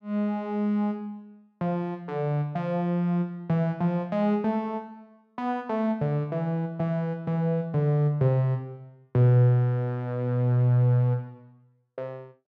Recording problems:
none

